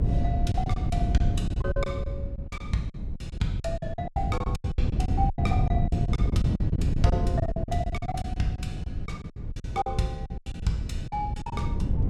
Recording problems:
rumble; below 64 Hz, SNR 7 dB
wind noise; below 150 Hz, SNR -3 dB
packet loss; 17% of the sound replaced, filled with silence

